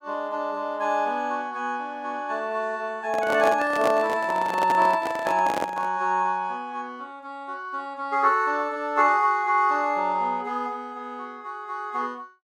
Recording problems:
microphone handling noise; from 3 to 6 s; peak +1 dB vs average level

